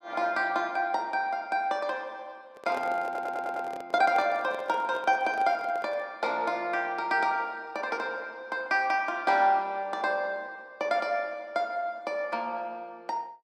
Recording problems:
microphone handling noise; from 2.5 to 6 s; peak -6 dB vs average level
audio stuttering; at 3 s

